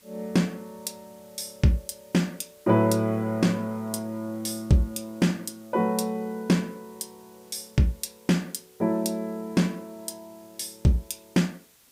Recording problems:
hiss; slope 0 dB per octave, SNR 28 dB

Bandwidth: 15.5 kHz